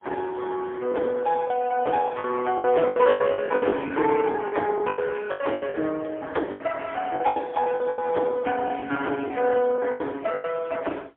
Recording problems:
telephone audio; 260 Hz to 3.4 kHz, AMR-NB, then MP3
lost packets; 13% of the sound replaced, filled with the last packet

